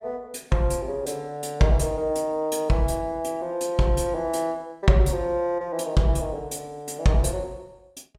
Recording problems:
none

